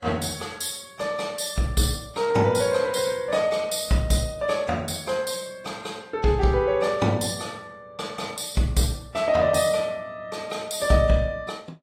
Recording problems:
lossy compression; AAC, log-spectral distance 3 dB, nothing above 16 kHz

